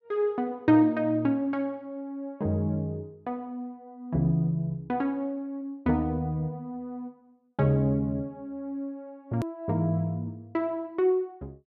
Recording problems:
click at an edit; at 9.5 s

